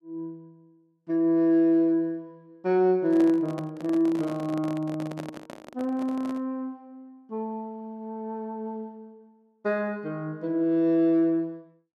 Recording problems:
handling noise; from 3 to 6.5 s; peak -7 dB vs average level

